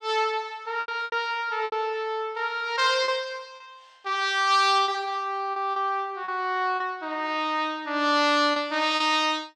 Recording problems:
packet loss; 7% of the sound replaced, filled with repeated pitch periods

